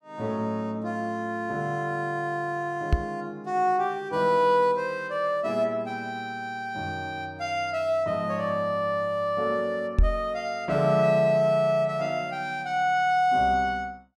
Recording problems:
knock on the microphone; at 3 s and at 10 s; peak +7 dB vs average level

